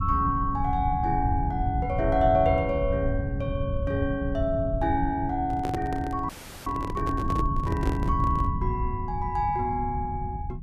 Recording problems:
low-frequency rumble; below 130 Hz, SNR 3 dB
handling noise; from 5.5 to 8.5 s; peak 0 dB vs average level
frozen audio; at 6.5 s

